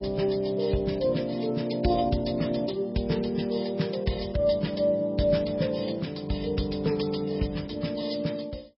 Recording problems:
codec artefacts; MP3, log-spectral distance 4 dB, nothing above 5.3 kHz

